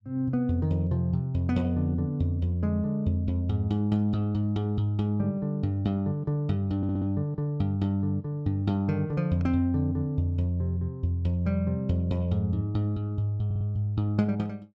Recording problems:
stutter; at 7 s and at 13 s

